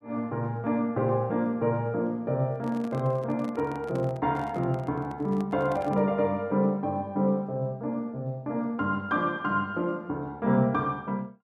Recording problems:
microphone handling noise; from 2.5 to 6 s; peak -10 dB vs average level

